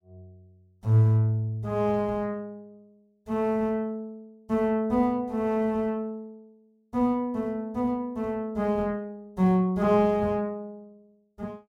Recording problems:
none

